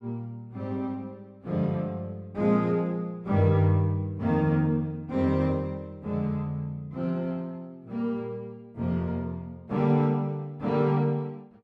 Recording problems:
none

